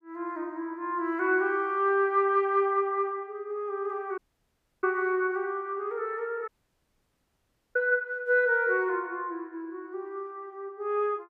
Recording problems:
dropout; at 4 s for 0.5 s and at 6.5 s for 1.5 s

